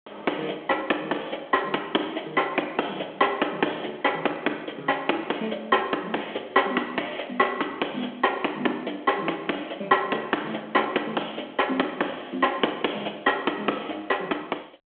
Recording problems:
telephone audio; 300 Hz to 3.5 kHz, G.726

